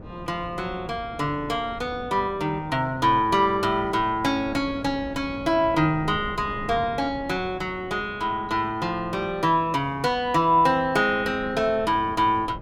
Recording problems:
wind noise; below 360 Hz, SNR 17 dB

